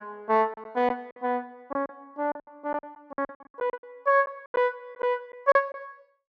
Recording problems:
lost packets; 13% of the sound replaced, filled with silence

